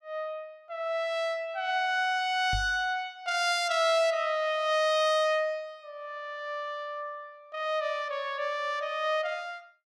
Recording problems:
microphone thump; at 2.5 s; peak -2 dB vs average level

